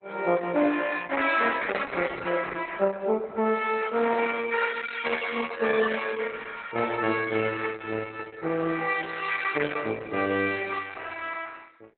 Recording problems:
codec artefacts; Opus, log-spectral distance 5 dB, nothing above 3.9 kHz

